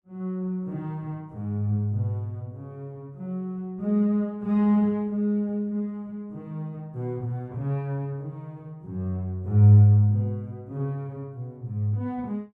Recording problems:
none

